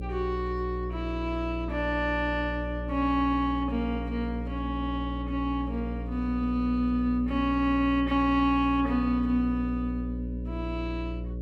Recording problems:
electrical hum; 60 Hz, harmonics up to 600 Hz, SNR 6 dB

